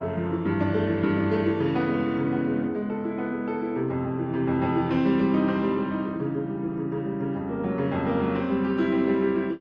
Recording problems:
lossy compression; MP3, then Opus, log-spectral distance 2 dB

